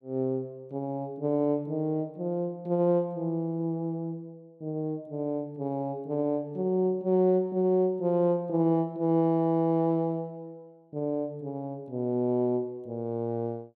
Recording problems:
none

